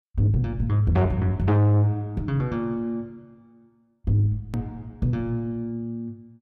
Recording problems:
distorted audio; soft clipping, signal-to-distortion ratio 8 dB
click at an edit; at 4.5 s

